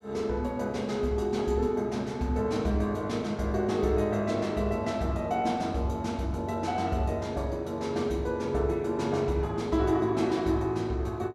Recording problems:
none

